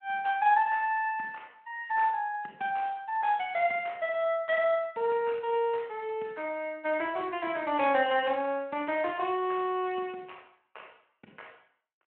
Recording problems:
telephone audio; 240 Hz to 3.1 kHz, Speex

